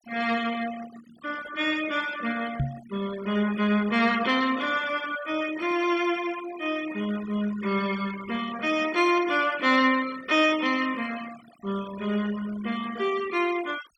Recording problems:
noise reduction artefacts; signal-to-artefact ratio 16 dB
microphone thump; at 2.5 s; peak +2 dB vs average level

